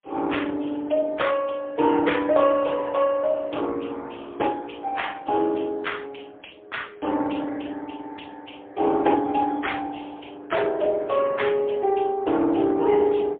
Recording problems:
phone line; 240 Hz to 3.6 kHz, AMR-NB, then MP3

